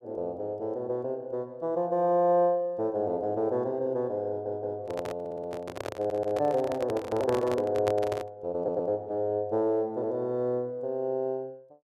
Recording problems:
audio stuttering; 4 times, first at 4.5 s
handling noise; from 5 to 8.5 s; peak +1 dB vs average level

